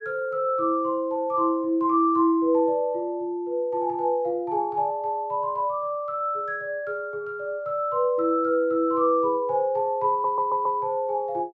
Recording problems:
audio stuttering; at 10 s

